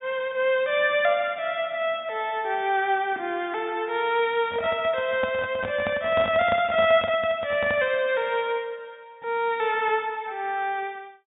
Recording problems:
treble cut off; nothing above 4 kHz
microphone handling noise; from 4.5 to 8 s; peak -3 dB vs average level

